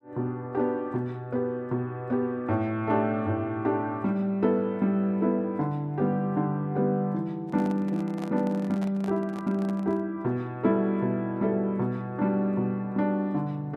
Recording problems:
microphone handling noise; from 7.5 to 10 s; peak -8 dB vs average level

